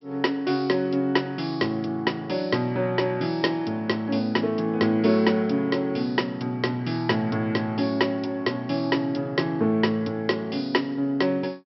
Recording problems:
treble missing; nothing above 5.6 kHz

